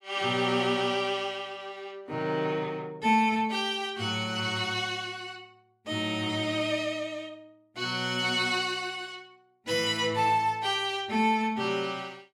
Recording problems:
none

